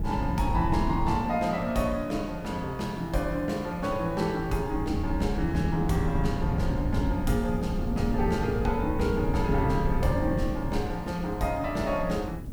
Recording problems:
hiss; slope 0 dB per octave, SNR 29 dB
wind noise; below 170 Hz, SNR 3 dB

